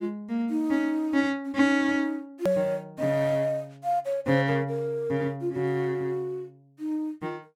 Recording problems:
hard cut with a click; at 2.5 s

